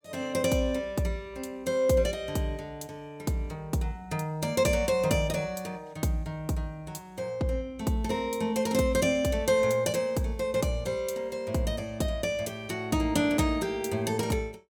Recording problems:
none

